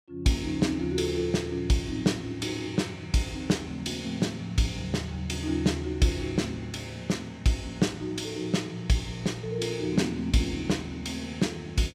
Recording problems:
none

